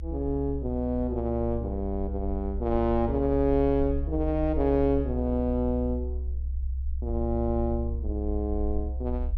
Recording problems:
treble cut off; nothing above 6.5 kHz
low-frequency rumble; below 66 Hz, strongest tone 66 Hz, SNR 5 dB

